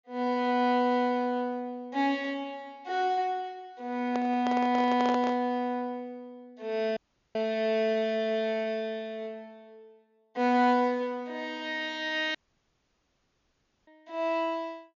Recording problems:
low-pass filter; nothing above 7 kHz
microphone handling noise; from 4 to 5.5 s; peak -2 dB vs average level
dropout; at 7 s and at 12 s for 1.5 s

